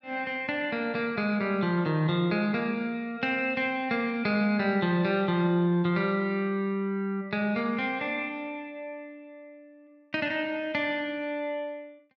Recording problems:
none

